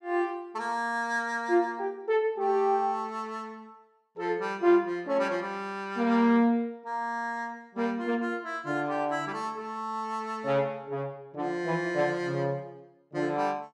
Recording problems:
none

